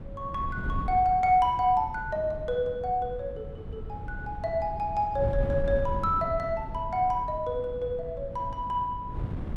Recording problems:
wind noise; below 150 Hz, SNR 10 dB

